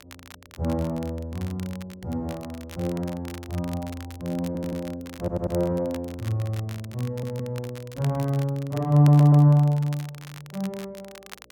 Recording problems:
hum; 60 Hz, harmonics up to 600 Hz, SNR 33 dB
crackle; vinyl, SNR 21 dB
stutter; 4 times, first at 4.5 s

